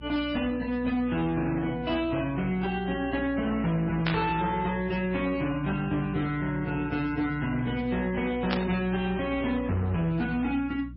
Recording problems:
lossy compression; AAC, then MP3, log-spectral distance 2 dB, nothing above 5.2 kHz
distortion; hard clipping, signal-to-distortion ratio 11 dB
hum; 60 Hz, harmonics up to 300 Hz, SNR 15 dB
burst of static; at 4 s and at 8.5 s; peak +3 dB vs average level

